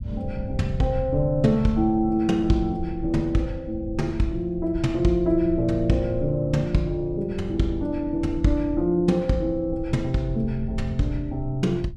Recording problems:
low-frequency rumble; below 96 Hz, SNR 12 dB

